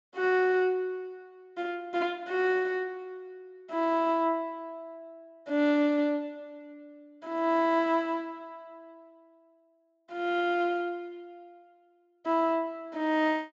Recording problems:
low-pass filter; nothing above 8 kHz

